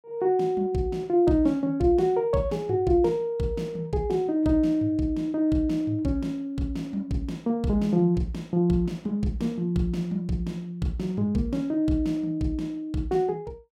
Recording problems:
none

